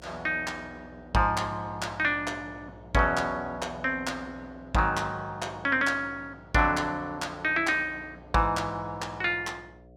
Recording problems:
hum; 60 Hz, harmonics up to 720 Hz, SNR 23 dB

